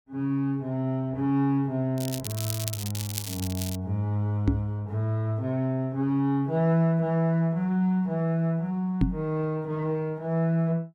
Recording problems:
crackling; from 2 to 4 s; loose cable, SNR 8 dB
knock on the microphone; at 4.5 s and at 9 s; peak +8 dB vs average level

